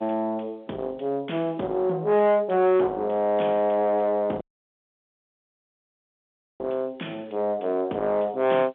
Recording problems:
telephone audio; 800 Hz to 3.4 kHz, G.711
distortion; soft clipping, signal-to-distortion ratio 8 dB
audio cutting out; at 4.5 s for 2 s

